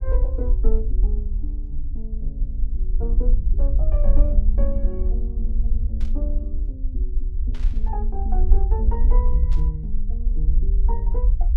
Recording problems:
rumble; below 50 Hz, SNR -12 dB
burst of static; at 6 s, at 7.5 s and at 9.5 s; peak -6 dB vs average level

